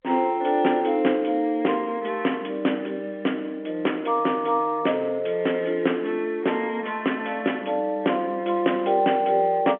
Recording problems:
phone line; 240 Hz to 3.4 kHz, G.711

